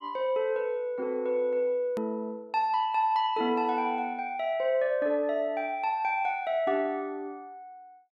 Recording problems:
edit click; at 2 s

